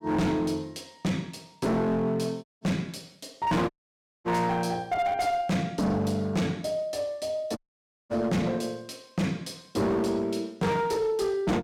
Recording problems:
distortion; hard clipping, uneven, signal-to-distortion ratio 7 dB
dropout; at 2.5 s, at 3.5 s for 0.5 s and at 7.5 s for 0.5 s

